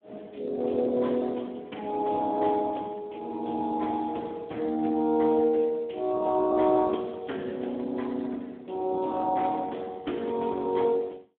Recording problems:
telephone audio; 190 Hz to 3.4 kHz, Speex

